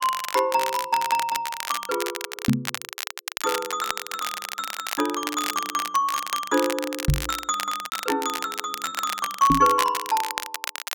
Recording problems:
crackle; vinyl, SNR 6 dB
packet loss; 2% of the sound replaced, filled with repeated pitch periods
knock on the microphone; at 2.5 s, at 7 s and at 9.5 s; peak +9 dB vs average level

